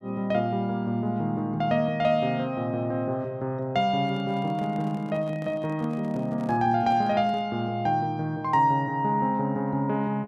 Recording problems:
handling noise; from 4 to 7.5 s; peak -12 dB vs average level

